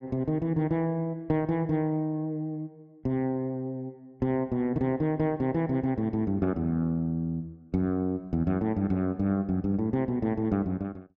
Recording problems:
none

